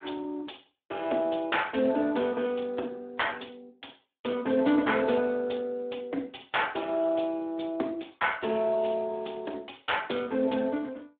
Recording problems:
phone line; 240 Hz to 3.6 kHz, Speex

